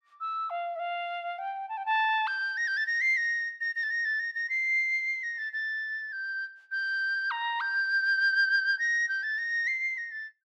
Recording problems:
none

